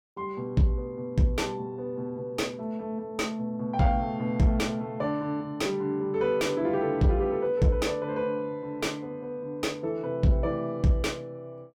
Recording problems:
distorted audio; soft clipping, signal-to-distortion ratio 11 dB

